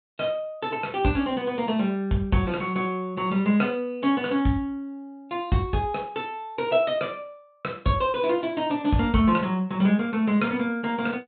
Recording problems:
treble missing; nothing above 4 kHz

